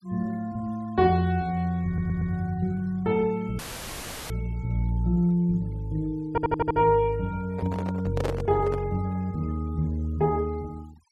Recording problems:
noise reduction artefacts; signal-to-artefact ratio 27 dB
audio stuttering; at 2 s and at 6.5 s
audio cutting out; at 3.5 s for 0.5 s; filled with static
microphone handling noise; from 7.5 to 9 s; peak 0 dB vs average level

